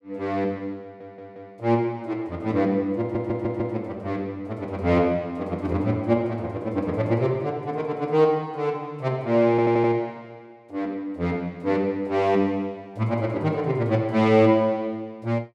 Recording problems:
stutter; at 1 s, at 3 s and at 9.5 s

